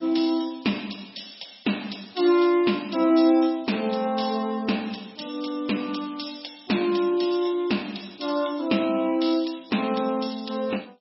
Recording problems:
lossy codec; MP3, log-spectral distance 8 dB, nothing above 5.5 kHz

